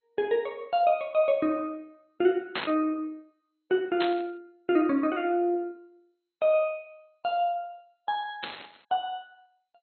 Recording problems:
lossy compression; MP2, log-spectral distance 3 dB
burst of static; at 2.5 s, at 4 s and at 8.5 s; peak 0 dB vs average level

